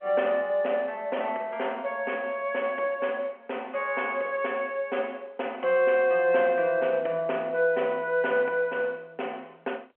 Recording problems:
telephone audio; 320 Hz to 3.3 kHz, G.711

